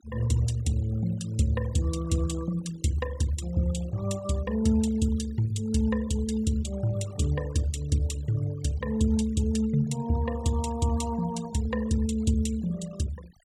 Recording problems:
denoising artefacts; signal-to-artefact ratio 19 dB

